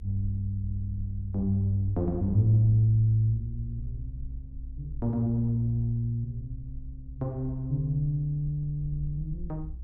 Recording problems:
low-frequency rumble; below 60 Hz, strongest tone 58 Hz, SNR 13 dB

